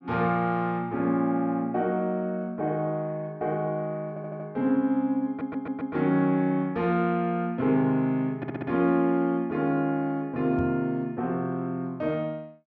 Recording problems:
stutter; at 4 s, at 5.5 s and at 8.5 s
microphone thump; at 11 s; peak -3 dB vs average level

